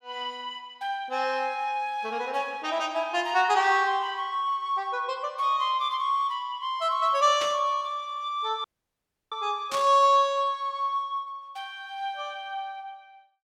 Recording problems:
burst of static; at 7.5 s and at 9.5 s; peak -4 dB vs average level
dropout; at 8.5 s for 0.5 s

